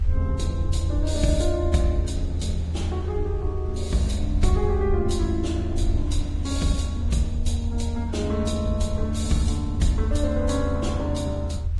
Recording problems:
lossy compression; Vorbis, log-spectral distance 2 dB, nothing above 11.3 kHz
rumble; below 80 Hz, SNR 0 dB
wind noise; below 2.8 kHz, SNR 26 dB

